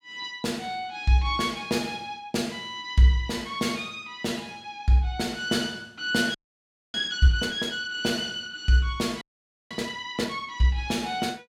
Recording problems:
frozen audio; at 6.5 s for 0.5 s and at 9 s

